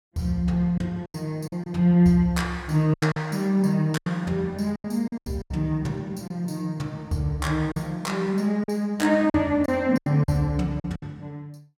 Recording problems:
packet loss; 9% of the sound replaced, filled with silence

